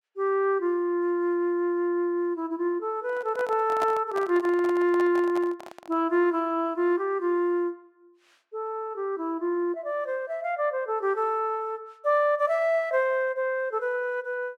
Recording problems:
microphone handling noise; from 3 to 6 s; peak -2 dB vs average level

